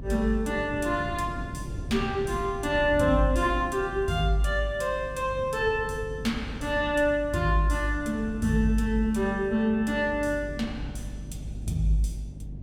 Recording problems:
electrical hum; 50 Hz, harmonics up to 300 Hz, SNR 15 dB
wind noise; below 180 Hz, SNR 14 dB

